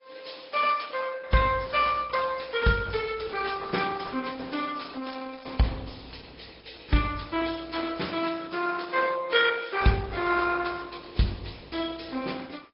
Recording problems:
treble missing; nothing above 5.3 kHz
lossy codec; Opus, then AAC, log-spectral distance 8 dB

